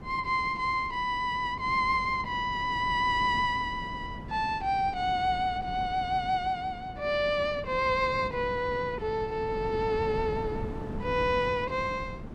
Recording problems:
wind noise; below 300 Hz, SNR 12 dB

